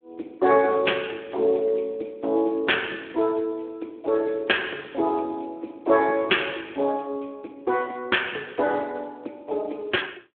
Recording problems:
telephone audio; 280 Hz to 3.4 kHz, Speex

